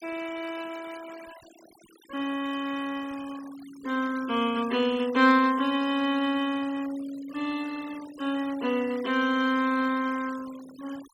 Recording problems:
denoising artefacts; signal-to-artefact ratio 19 dB

